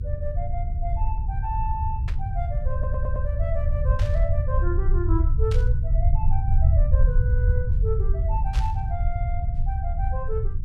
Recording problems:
hum; 60 Hz, harmonics up to 420 Hz, SNR 18 dB
rumble; below 86 Hz, SNR -9 dB
static burst; 4 times, first at 2 s; peak -1 dB vs average level
stutter; at 2.5 s

